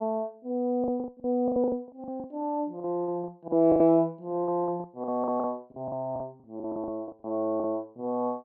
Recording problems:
lost packets; 16% of the sound replaced, filled with the last packet

